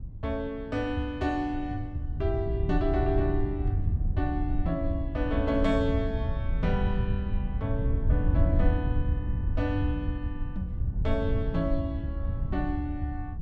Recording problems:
wind on the microphone; below 98 Hz, SNR 0 dB

